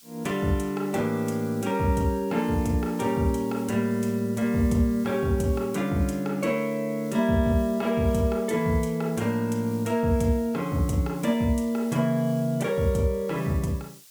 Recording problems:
hiss; SNR 22 dB

